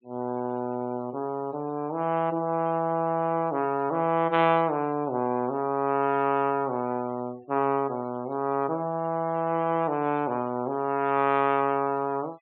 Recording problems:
treble missing; nothing above 4 kHz
noise reduction artefacts; signal-to-artefact ratio 27 dB

